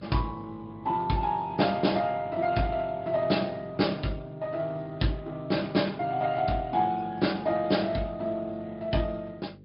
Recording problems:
treble missing; nothing above 5.2 kHz
lossy compression; Speex, log-spectral distance 3 dB
hum; 50 Hz, harmonics up to 550 Hz, SNR 21 dB

